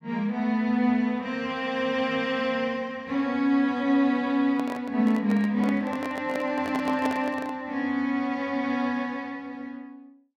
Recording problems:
handling noise; from 4.5 to 7.5 s; peak -2 dB vs average level

